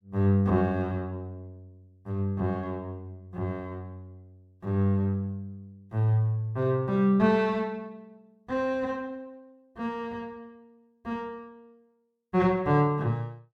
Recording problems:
none

